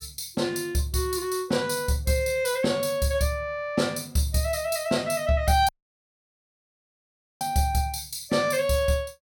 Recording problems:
dropout; at 5.5 s for 1.5 s

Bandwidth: 17.5 kHz